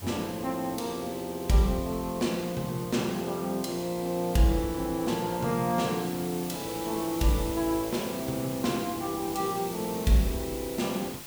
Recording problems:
background hiss; slope -1 dB per octave, SNR 11 dB

